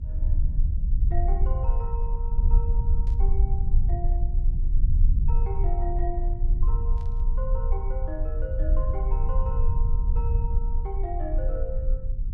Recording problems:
rumble; below 56 Hz, strongest tone 28 Hz, SNR -11 dB
burst of static; at 3 s and at 7 s; peak -13 dB vs average level

